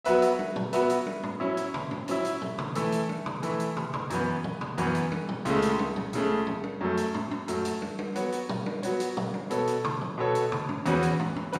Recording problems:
none

